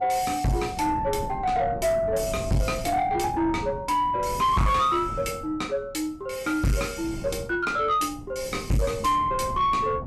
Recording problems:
distortion; soft clipping, signal-to-distortion ratio 7 dB
wind noise; below 250 Hz, SNR 13 dB

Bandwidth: 13 kHz